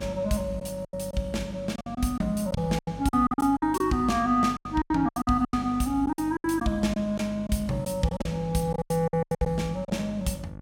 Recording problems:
hum; 50 Hz, harmonics up to 1.5 kHz, SNR 15 dB
packet loss; 14% of the sound replaced, filled with silence

